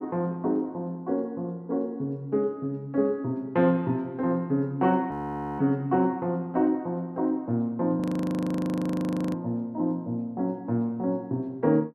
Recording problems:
audio freezing; at 5 s and at 8 s for 1.5 s

